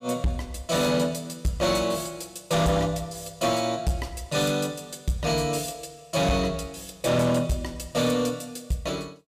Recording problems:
distortion; hard clipping, signal-to-distortion ratio 12 dB

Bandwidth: 15.5 kHz